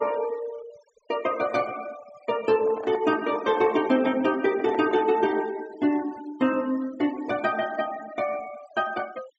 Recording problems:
treble missing; nothing above 8 kHz
noise reduction artefacts; signal-to-artefact ratio 20 dB
handling noise; from 2.5 to 5.5 s; peak -7 dB vs average level

